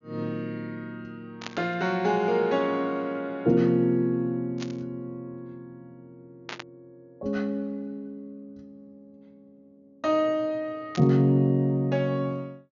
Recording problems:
treble missing; nothing above 7 kHz
static burst; 4 times, first at 1.5 s; peak -5 dB vs average level

